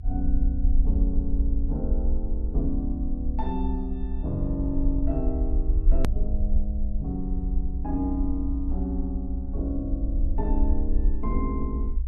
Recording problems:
rumble; below 60 Hz, SNR -3 dB
edit click; at 6 s

